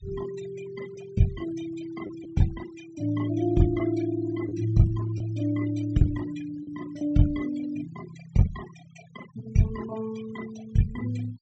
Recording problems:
treble missing; nothing above 8 kHz
denoising artefacts; signal-to-artefact ratio 18 dB
packet loss; 1.6% of the sound replaced, filled with the last packet

